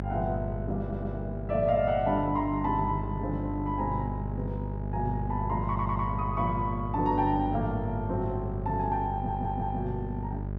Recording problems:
hum; 50 Hz, harmonics up to 650 Hz, SNR 4 dB
audio stuttering; at 1 s, at 5.5 s and at 9 s

